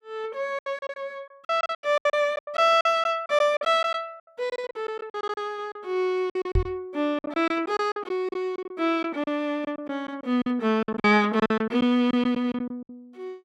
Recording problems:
packet loss; 15% of the sound replaced, filled with silence
microphone thump; at 6.5 s; peak +4 dB vs average level

